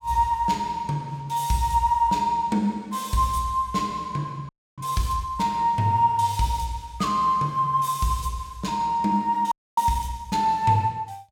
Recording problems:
frozen audio; at 4.5 s and at 9.5 s

